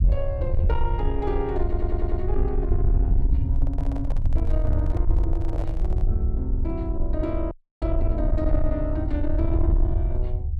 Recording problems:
distortion; soft clipping, signal-to-distortion ratio 11 dB
low-frequency rumble; below 72 Hz, SNR -5 dB
stutter; at 1.5 s
microphone handling noise; from 3.5 to 6 s; peak -3 dB vs average level
audio freezing; at 7.5 s

